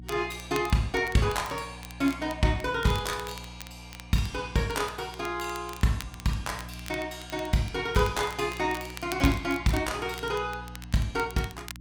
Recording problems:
electrical hum; 60 Hz, harmonics up to 300 Hz, SNR 16 dB
crackle; vinyl, SNR 17 dB

